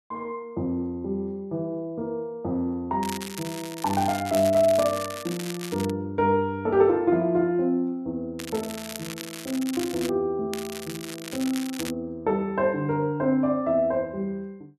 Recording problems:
crackling; from 3 to 6 s, from 8.5 to 10 s and from 11 to 12 s; loose cable, SNR 11 dB

